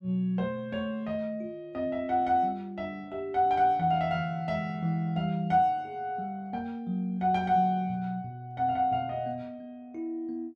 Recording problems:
none

